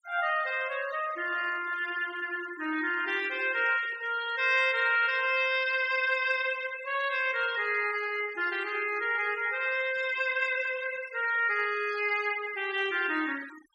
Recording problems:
denoising artefacts; signal-to-artefact ratio 17 dB

